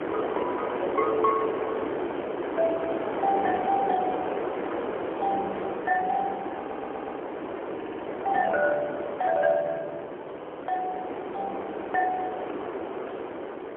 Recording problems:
phone line; 300 Hz to 2.1 kHz, AMR-NB, then MP3
wind noise; below 840 Hz, SNR 3 dB
stutter; at 6.5 s, at 8 s and at 10 s

